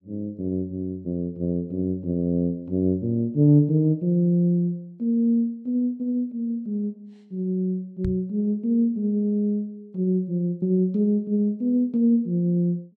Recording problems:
microphone bump; at 8 s; peak -2 dB vs average level

